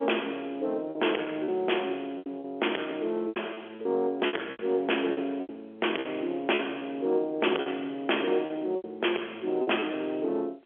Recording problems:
telephone audio; 300 Hz to 3.4 kHz, G.711
distortion; soft clipping, signal-to-distortion ratio 12 dB
packet loss; 10% of the sound replaced, filled with repeated pitch periods

